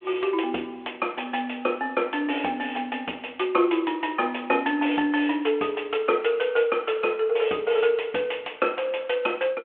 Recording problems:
telephone audio; 260 Hz to 3.4 kHz, G.726

